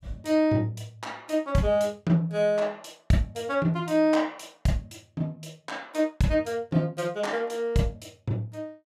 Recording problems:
none

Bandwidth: 14.5 kHz